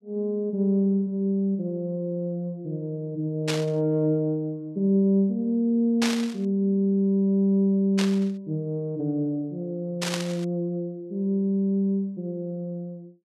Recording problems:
static burst; 4 times, first at 3.5 s; peak +2 dB vs average level

